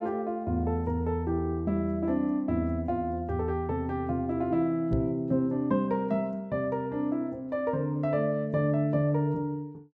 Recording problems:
microphone bump; at 5 s; peak +2 dB vs average level

